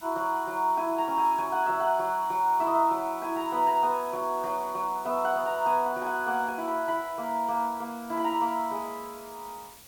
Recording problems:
background hiss; slope -1 dB per octave, SNR 21 dB

